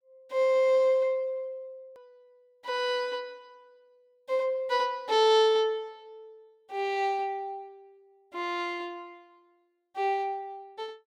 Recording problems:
edit click; at 2 s

